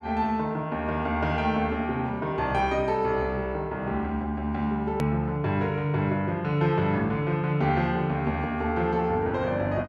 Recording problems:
edit click; at 5 s

